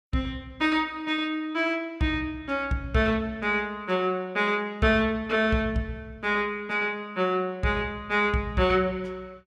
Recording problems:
none

